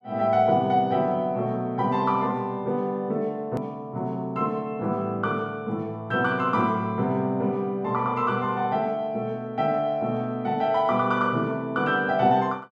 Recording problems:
hard cut with a click; at 3.5 s

